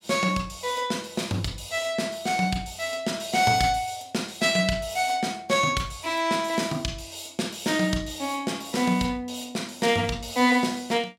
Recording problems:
none

